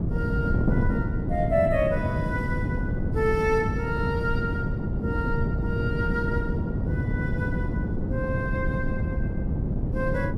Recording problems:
wind on the microphone; below 220 Hz, SNR -2 dB

